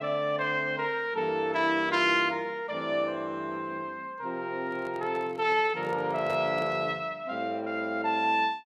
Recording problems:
microphone handling noise; from 4.5 to 7 s; peak -6 dB vs average level

